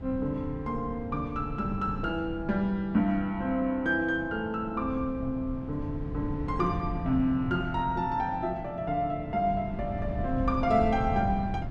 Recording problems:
wind noise; below 160 Hz, SNR 9 dB

